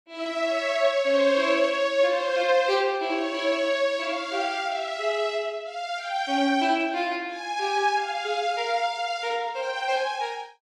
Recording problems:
none

